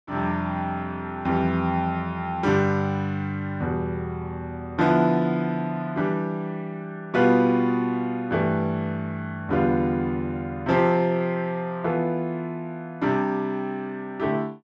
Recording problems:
none

